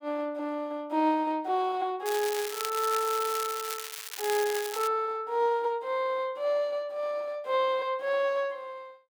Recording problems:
crackling; from 2 to 5 s; loose cable, SNR 7 dB

